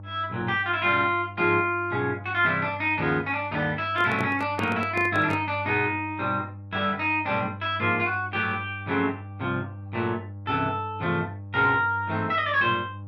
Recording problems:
hum; 50 Hz, harmonics up to 800 Hz, SNR 15 dB
handling noise; from 4 to 5.5 s; peak -3 dB vs average level

